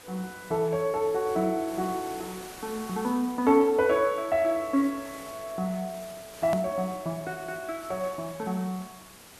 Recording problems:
hiss; slope -2 dB per octave, SNR 17 dB
hard cut with a click; at 6.5 s

